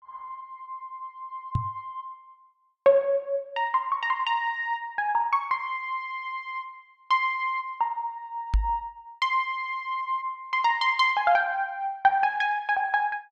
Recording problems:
microphone bump; at 1.5 s and at 8.5 s; peak +5 dB vs average level

